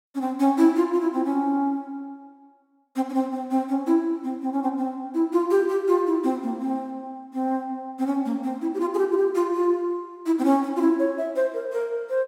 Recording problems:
none

